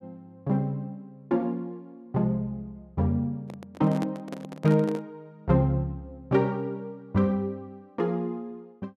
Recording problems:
microphone handling noise; from 3.5 to 5 s; peak -3 dB vs average level

